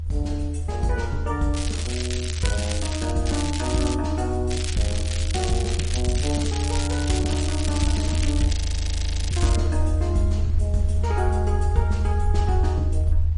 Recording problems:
lossy compression; MP3, log-spectral distance 4 dB, nothing above 9.8 kHz
low-frequency rumble; below 82 Hz, strongest tone 80 Hz, SNR -2 dB
wind on the microphone; below 670 Hz, SNR 23 dB
crackle; from 1.5 to 3 s, at 3.5 s and from 4.5 to 9.5 s; loose cable, SNR 4 dB
audio freezing; at 8.5 s for 1 s

